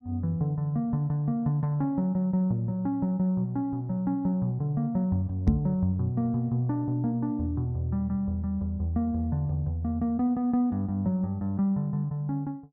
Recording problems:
microphone thump; at 5.5 s; peak +9 dB vs average level

